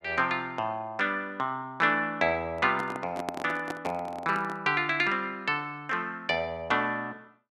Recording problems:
microphone handling noise; from 2.5 to 4.5 s; peak -1 dB vs average level

